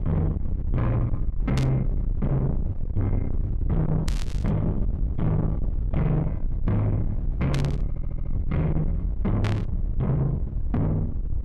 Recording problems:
distortion; soft clipping, signal-to-distortion ratio 8 dB
rumble; below 120 Hz, SNR 3 dB
burst of static; 4 times, first at 1.5 s; peak -4 dB vs average level
audio stuttering; at 8 s

